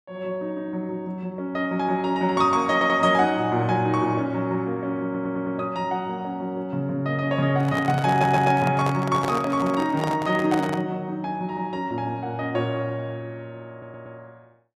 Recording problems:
audio stuttering; 4 times, first at 2.5 s
microphone handling noise; from 7.5 to 11 s; peak -1 dB vs average level

